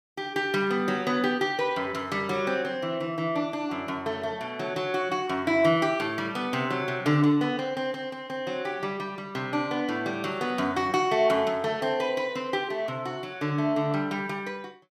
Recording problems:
none

